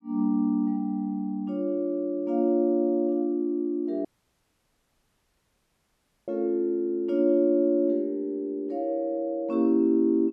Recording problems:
dropout; at 4 s for 2 s

